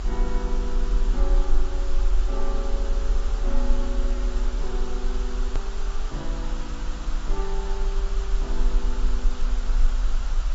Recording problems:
treble cut off; nothing above 7.6 kHz
lossy compression; AAC, log-spectral distance 2 dB
hiss; SNR 2 dB
low-frequency rumble; below 40 Hz, strongest tone 20 Hz, SNR -10 dB
hard cut with a click; at 5.5 s

